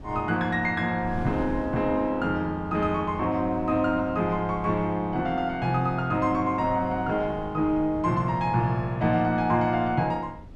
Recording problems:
wind on the microphone; below 200 Hz, SNR 18 dB

